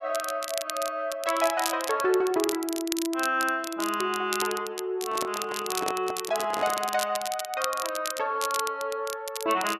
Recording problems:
crackling; vinyl, SNR 7 dB
handling noise; from 5 to 7 s; peak -2 dB vs average level

